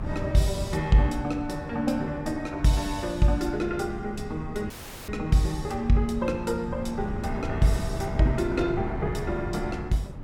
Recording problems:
wind on the microphone; below 200 Hz, SNR 9 dB
audio cutting out; at 4.5 s

